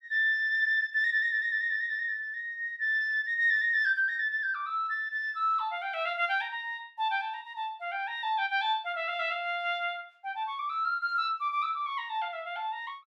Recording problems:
none

